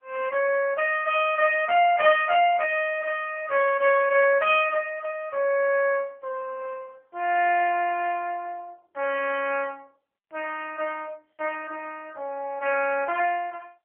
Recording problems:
telephone audio; 370 Hz to 3.3 kHz, AMR-NB

